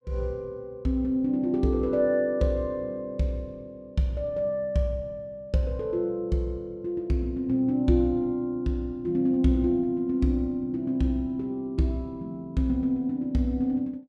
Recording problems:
none

